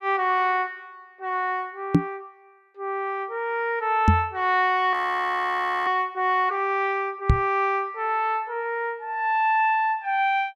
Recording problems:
microphone bump; at 2 s, at 4 s and at 7.5 s; peak +10 dB vs average level
frozen audio; at 5 s for 1 s

